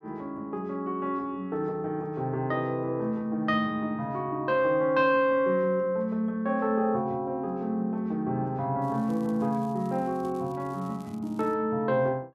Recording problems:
crackle; from 9 to 12 s; loose cable, SNR 30 dB

